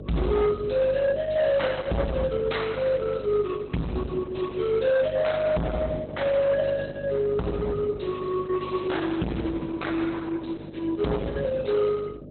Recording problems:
lossy compression; Opus, log-spectral distance 5 dB, nothing above 4.1 kHz
distortion; hard clipping, signal-to-distortion ratio 6 dB
hum; 50 Hz, harmonics up to 600 Hz, SNR 13 dB

